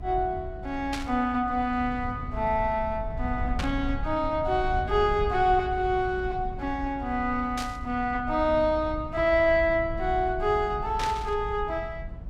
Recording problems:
low-frequency rumble; below 92 Hz, SNR 10 dB
static burst; 4 times, first at 1 s; peak -3 dB vs average level

